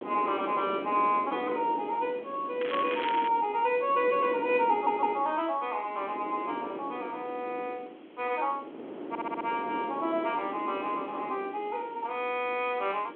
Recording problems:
phone line; 260 Hz to 3.4 kHz, G.726
background hiss; SNR 28 dB
wind on the microphone; below 540 Hz, SNR 10 dB
crackling; at 2.5 s; loose cable, SNR 9 dB
stutter; at 4.5 s and at 9 s

